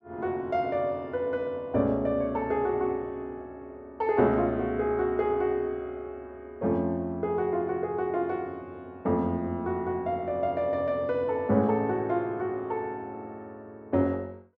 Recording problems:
none

